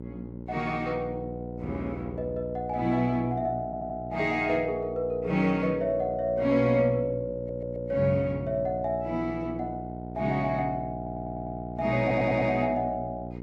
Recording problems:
hum; 60 Hz, harmonics up to 960 Hz, SNR 10 dB
stutter; 4 times, first at 3.5 s

